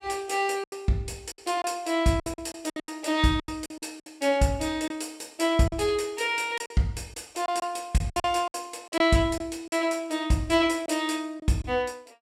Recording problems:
packet loss; 10% of the sound replaced, filled with silence

